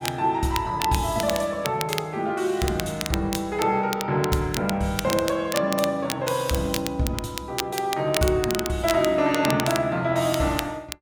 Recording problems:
crackle; vinyl, SNR 8 dB

